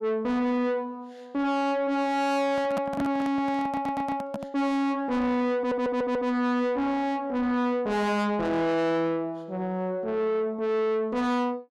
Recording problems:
distorted audio; soft clipping, signal-to-distortion ratio 6 dB
microphone handling noise; from 2.5 to 4.5 s; peak 0 dB vs average level
stutter; at 3.5 s and at 5.5 s

